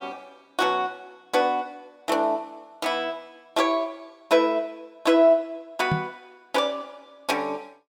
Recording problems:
knock on the microphone; at 6 s; peak +3 dB vs average level

